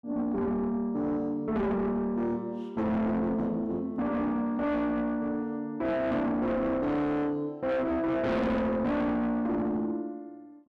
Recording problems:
distortion; soft clipping, signal-to-distortion ratio 7 dB

